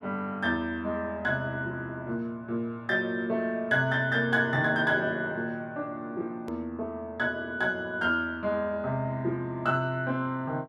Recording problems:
hard cut with a click; at 6.5 s

